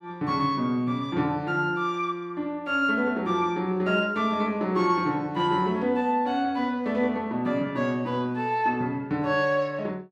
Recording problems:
none

